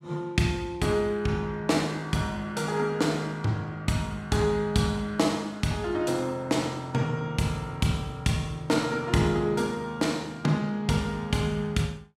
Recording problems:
none

